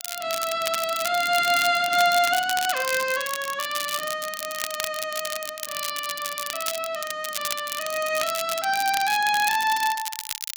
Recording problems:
crackle; vinyl, SNR 7 dB

